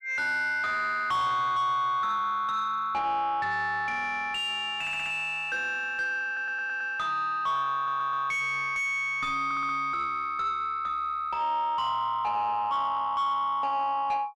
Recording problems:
distorted audio; soft clipping, signal-to-distortion ratio 10 dB
stutter; 4 times, first at 5 s

